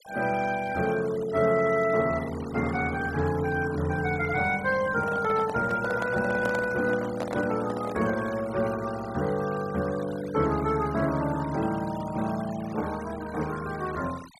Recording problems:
noise reduction artefacts; signal-to-artefact ratio 17 dB
microphone handling noise; from 5 to 8.5 s; peak -2 dB vs average level

